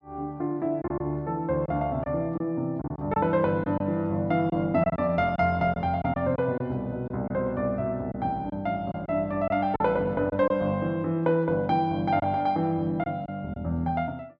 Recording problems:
lost packets; 5% of the sound replaced, filled with silence

